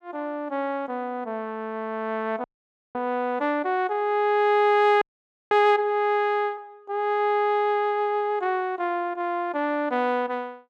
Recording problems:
audio freezing; at 2.5 s for 0.5 s and at 5 s

